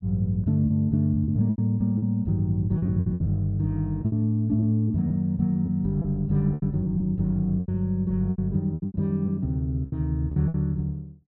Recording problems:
packet loss; 11% of the sound replaced, filled with repeated pitch periods

